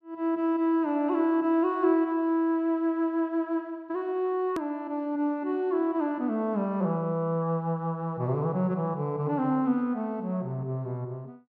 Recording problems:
click at an edit; at 4.5 s

